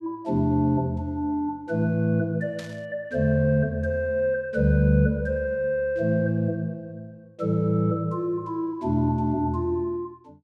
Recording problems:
burst of static; at 2.5 s; peak -12 dB vs average level

